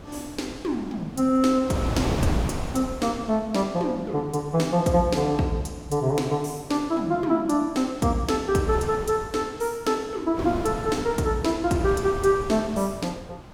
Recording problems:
wind on the microphone; below 640 Hz, SNR 10 dB

